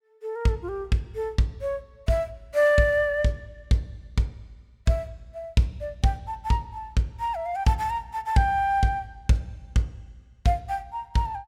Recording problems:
none

